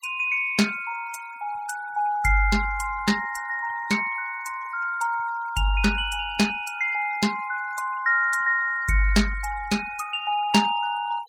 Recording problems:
noise reduction artefacts; signal-to-artefact ratio 19 dB

